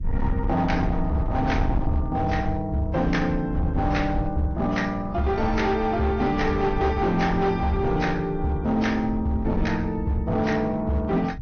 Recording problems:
lossy compression; MP2, then AAC, log-spectral distance 2 dB, nothing above 6.3 kHz
distorted audio; hard clipping, signal-to-distortion ratio 12 dB
rumble; below 94 Hz, SNR 8 dB

